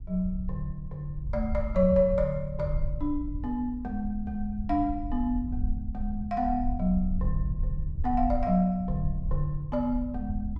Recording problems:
low-frequency rumble; below 70 Hz, SNR 6 dB

